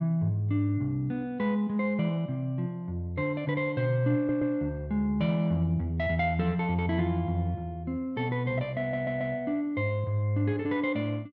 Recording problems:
stutter; at 4 s and at 9 s

